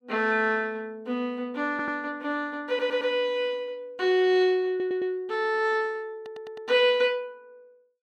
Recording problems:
stutter; 4 times, first at 1.5 s

